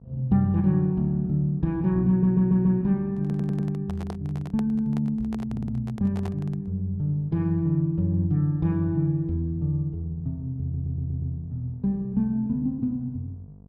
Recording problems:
electrical hum; 50 Hz, harmonics up to 750 Hz, SNR 24 dB
stutter; 4 times, first at 2 s
handling noise; from 3 to 6.5 s; peak -8 dB vs average level

